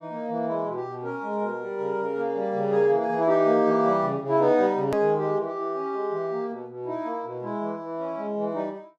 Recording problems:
click at an edit; at 5 s

